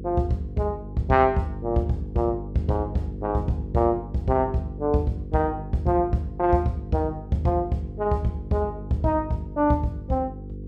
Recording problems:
electrical hum; 50 Hz, harmonics up to 500 Hz, SNR 12 dB

